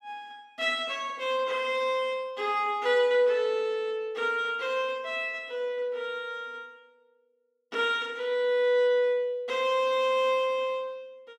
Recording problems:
none

